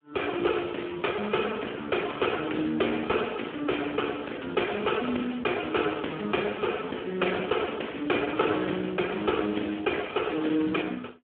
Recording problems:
phone line; 220 Hz to 3.3 kHz, Speex

